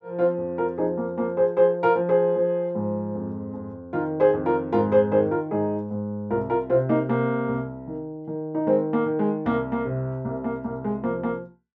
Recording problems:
none

